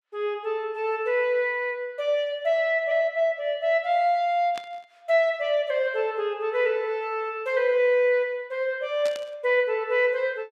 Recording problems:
burst of static; at 4.5 s and at 9 s; peak -9 dB vs average level

